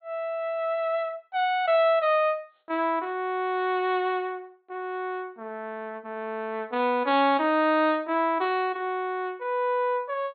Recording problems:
treble missing; nothing above 4.3 kHz

